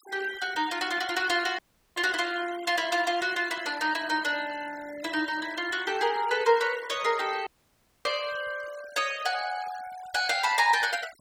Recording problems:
denoising artefacts; signal-to-artefact ratio 17 dB
dropout; at 1.5 s and at 7.5 s for 0.5 s

